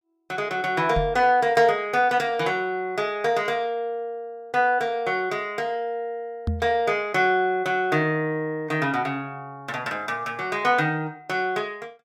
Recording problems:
knock on the microphone; at 1 s and at 6.5 s; peak +2 dB vs average level

